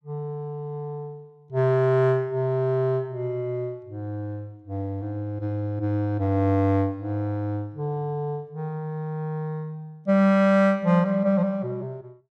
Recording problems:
none

